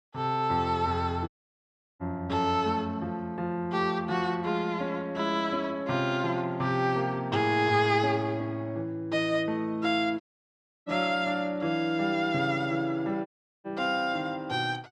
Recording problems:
dropout; at 1.5 s for 0.5 s, at 10 s for 0.5 s and at 13 s

